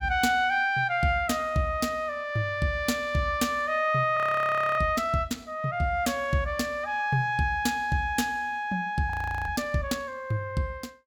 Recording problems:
frozen audio; at 4 s for 0.5 s and at 9 s

